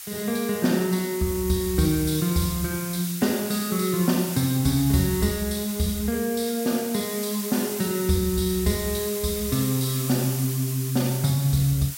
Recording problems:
hiss; slope +4 dB per octave, SNR 8 dB

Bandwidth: 16 kHz